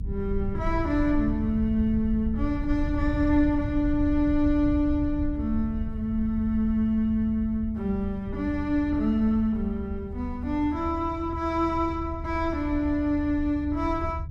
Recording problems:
rumble; below 84 Hz, SNR 8 dB

